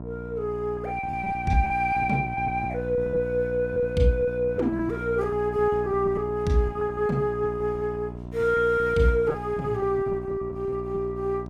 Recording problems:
hum; 60 Hz, harmonics up to 1.1 kHz, SNR 10 dB
packet loss; 8% of the sound replaced, filled with repeated pitch periods

